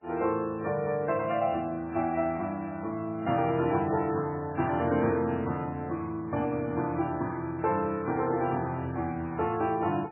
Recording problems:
lossy codec; MP3, log-spectral distance 2 dB, nothing above 2.7 kHz

